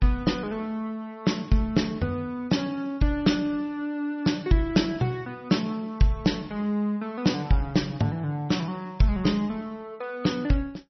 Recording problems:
codec artefacts; MP3, log-spectral distance 2 dB, nothing above 5.8 kHz

